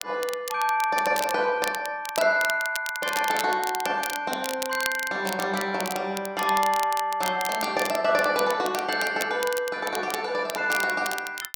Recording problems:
crackle; vinyl, SNR 10 dB

